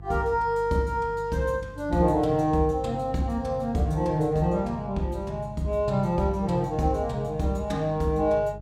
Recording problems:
hum; 50 Hz, harmonics up to 500 Hz, SNR 16 dB

